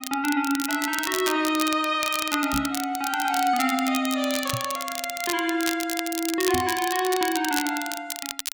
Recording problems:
crackle; vinyl, SNR 6 dB
microphone bump; at 2.5 s, at 4.5 s and at 6.5 s; peak -2 dB vs average level

